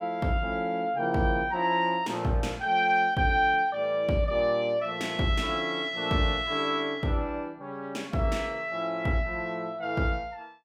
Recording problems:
none

